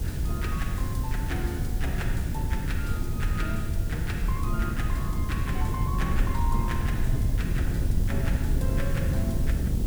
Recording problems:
hum; 60 Hz, harmonics up to 360 Hz, SNR 18 dB
background hiss; slope +2 dB per octave, SNR 8 dB
wind on the microphone; below 110 Hz, SNR -8 dB

